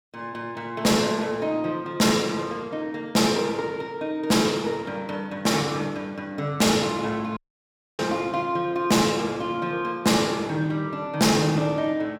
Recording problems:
distorted audio; hard clipping, signal-to-distortion ratio 11 dB
dropout; at 7.5 s for 0.5 s

